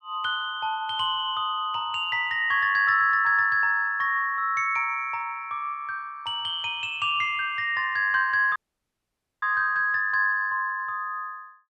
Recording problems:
dropout; at 8.5 s for 1 s

